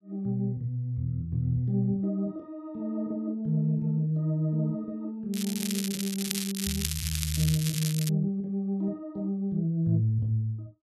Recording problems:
crackling; from 5.5 to 8 s; loose cable, SNR 4 dB

